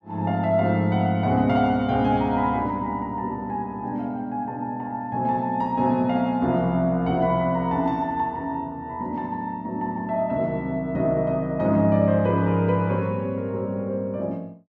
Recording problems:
none

